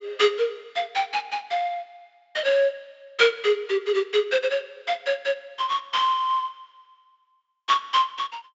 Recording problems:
treble missing; nothing above 8 kHz

